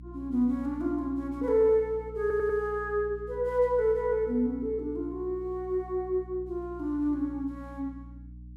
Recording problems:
hum; 60 Hz, harmonics up to 300 Hz, SNR 16 dB
stutter; at 2 s

